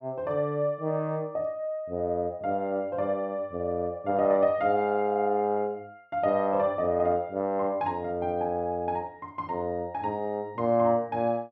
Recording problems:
none

